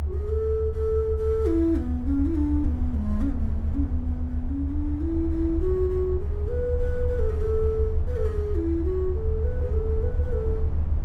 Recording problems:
rumble; below 78 Hz, strongest tone 76 Hz, SNR 0 dB

